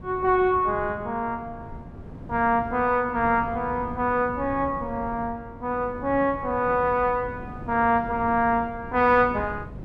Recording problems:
wind on the microphone; below 270 Hz, SNR 15 dB

